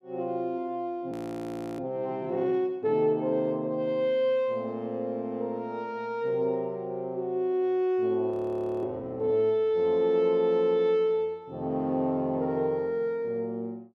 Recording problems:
frozen audio; at 1 s for 0.5 s and at 8.5 s for 0.5 s

